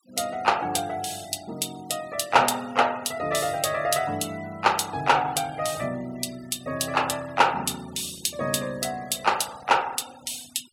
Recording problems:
denoising artefacts; signal-to-artefact ratio 20 dB

